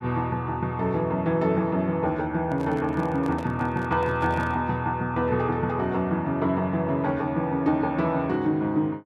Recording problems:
handling noise; from 2.5 to 4.5 s; peak -8 dB vs average level

